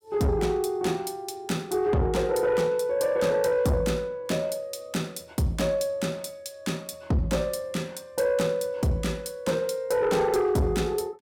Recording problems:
distortion; soft clipping, signal-to-distortion ratio 11 dB

